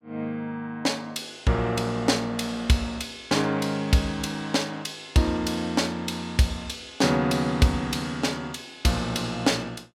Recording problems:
none

